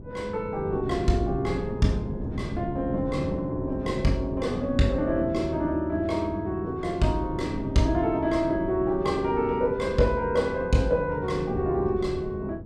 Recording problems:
wind on the microphone; below 260 Hz, SNR 9 dB

